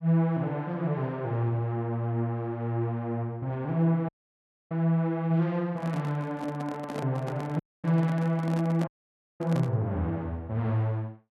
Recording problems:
audio cutting out; at 4 s for 0.5 s, at 7.5 s and at 9 s for 0.5 s
handling noise; from 5.5 to 10 s; peak -3 dB vs average level

